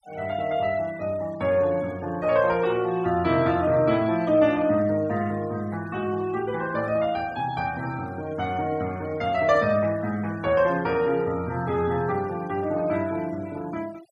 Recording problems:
noise reduction artefacts; signal-to-artefact ratio 22 dB

